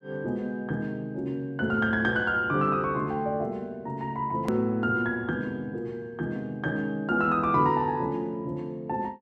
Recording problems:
click at an edit; at 4.5 s

